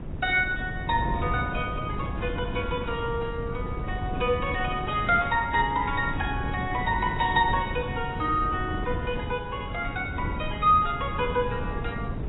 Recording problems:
lossy compression; AAC, log-spectral distance 3 dB, nothing above 3.2 kHz
wind noise; below 240 Hz, SNR 6 dB

